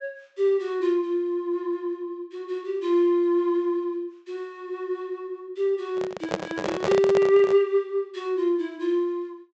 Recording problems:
treble missing; nothing above 8 kHz
microphone handling noise; from 6 to 7.5 s; peak +2 dB vs average level

